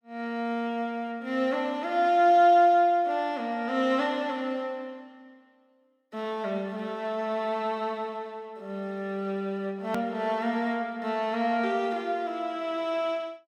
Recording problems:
click at an edit; at 10 s

